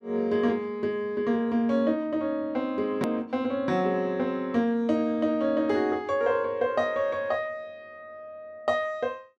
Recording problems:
hard cut with a click; at 3 s

